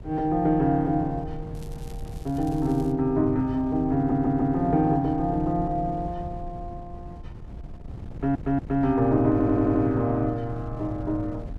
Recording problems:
wind noise; below 140 Hz, SNR 14 dB
crackling; from 1.5 to 3 s; loose cable, SNR 28 dB
stutter; at 4 s, at 8 s and at 9.5 s

